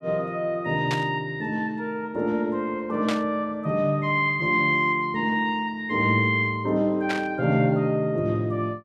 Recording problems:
burst of static; at 1 s, at 3 s and at 7 s; peak -2 dB vs average level

